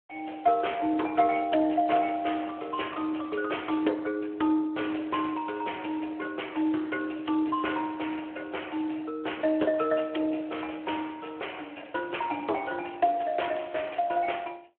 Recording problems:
phone line; 260 Hz to 3.3 kHz, Speex

